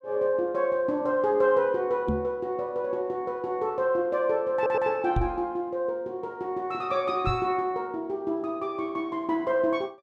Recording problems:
microphone thump; at 2 s, at 5 s and at 7.5 s; peak +3 dB vs average level
audio stuttering; at 4.5 s

